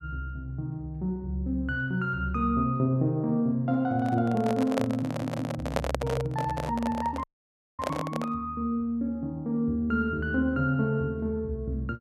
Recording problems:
handling noise; from 4 to 8.5 s; peak +5 dB vs average level
stutter; at 5 s
dropout; at 7 s for 0.5 s

